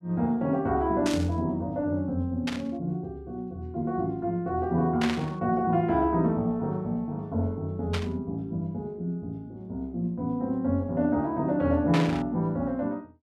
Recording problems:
burst of static; 5 times, first at 1 s; peak +1 dB vs average level

